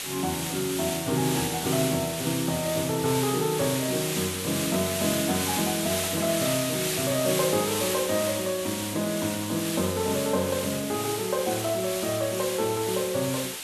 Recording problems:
background hiss; slope +1 dB per octave, SNR 3 dB

